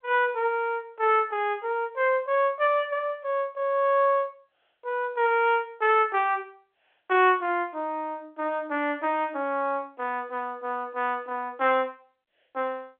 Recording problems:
phone line; 260 Hz to 3.5 kHz, G.711

